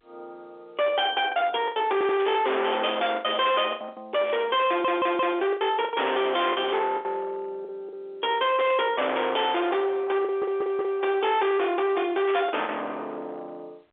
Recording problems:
telephone audio; 340 Hz to 3.5 kHz, G.711
distorted audio; hard clipping, uneven, signal-to-distortion ratio 5 dB
packet loss; 7% of the sound replaced, filled with the last packet
audio stuttering; at 2 s, at 4.5 s and at 10 s
burst of static; 5 times, first at 2 s; peak -8 dB vs average level

